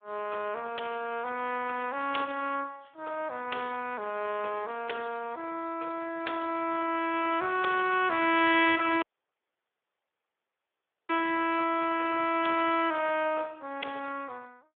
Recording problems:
phone line; 340 Hz to 3.4 kHz, Speex
dropout; at 9 s for 2 s

